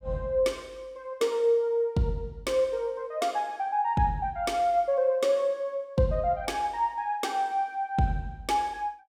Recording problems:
none

